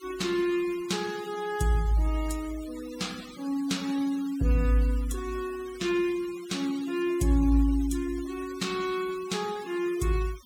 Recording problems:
denoising artefacts; signal-to-artefact ratio 17 dB

